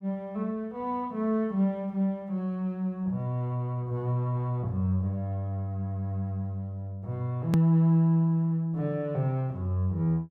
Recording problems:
hard cut with a click; at 7.5 s

